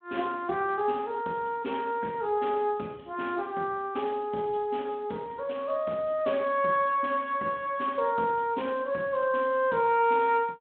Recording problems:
telephone audio; 190 Hz to 3.5 kHz, Speex

